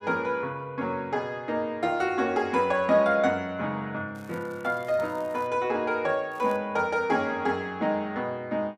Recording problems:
crackling; from 4 to 5.5 s and at 6.5 s; loose cable, SNR 28 dB

